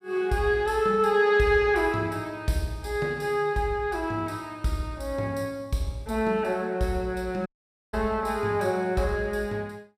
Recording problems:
dropout; at 7.5 s

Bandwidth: 15.5 kHz